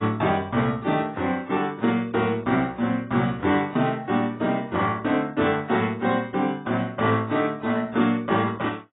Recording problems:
lossy codec; AAC, log-spectral distance 2 dB, nothing above 3.4 kHz

